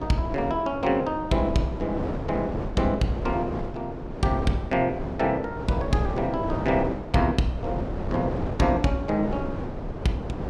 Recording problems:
wind noise; below 500 Hz, SNR 6 dB

